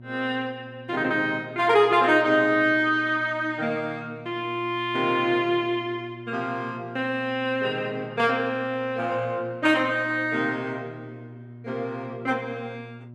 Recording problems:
hum; 60 Hz, harmonics up to 720 Hz, SNR 19 dB

